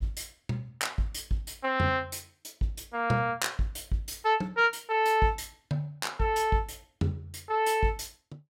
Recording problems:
none

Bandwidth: 16.5 kHz